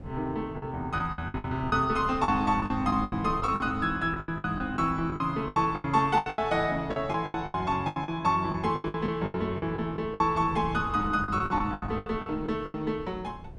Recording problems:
wind noise; below 220 Hz, SNR 14 dB
packet loss; 17% of the sound replaced, filled with the last packet

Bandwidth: 12 kHz